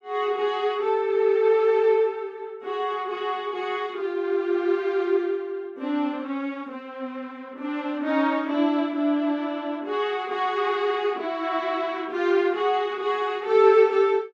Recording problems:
none

